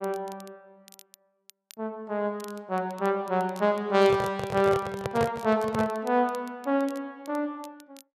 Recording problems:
crackle; vinyl, SNR 25 dB
handling noise; from 4 to 6 s; peak 0 dB vs average level

